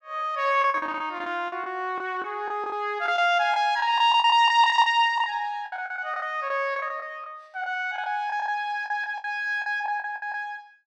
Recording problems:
lost packets; 14% of the sound replaced, filled with the last packet

